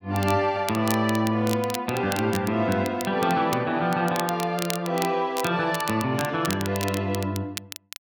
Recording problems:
crackling; vinyl, SNR 11 dB

